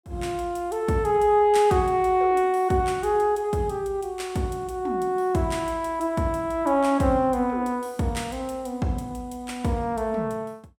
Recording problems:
none

